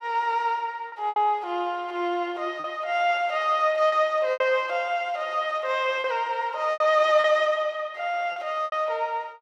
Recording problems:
lost packets; 6% of the sound replaced, filled with repeated pitch periods

